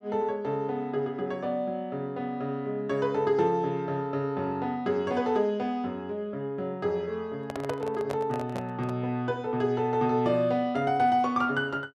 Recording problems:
handling noise; from 7.5 to 9 s; peak -1 dB vs average level

